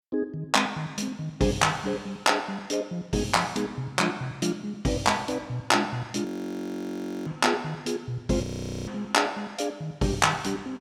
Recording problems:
frozen audio; at 6.5 s for 1 s and at 8.5 s

